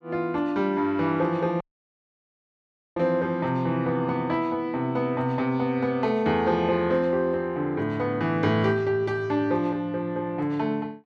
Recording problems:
audio cutting out; at 1.5 s for 1.5 s

